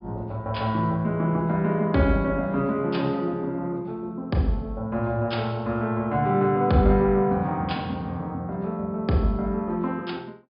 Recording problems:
treble missing; nothing above 5.5 kHz

